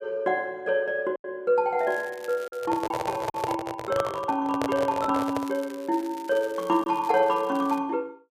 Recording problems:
lost packets; 2% of the sound replaced, filled with silence
crackle; at 2 s, at 2.5 s and from 5 to 8 s; loose cable, SNR 22 dB
microphone handling noise; from 2.5 to 5.5 s; peak +1 dB vs average level

